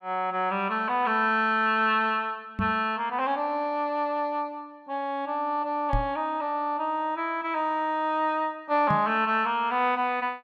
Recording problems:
knock on the microphone; at 2.5 s, at 6 s and at 9 s; peak +1 dB vs average level

